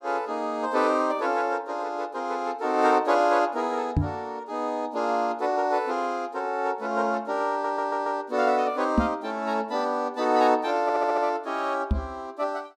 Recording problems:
microphone thump; at 4 s, at 9 s and at 12 s; peak +7 dB vs average level
audio stuttering; at 7.5 s and at 11 s

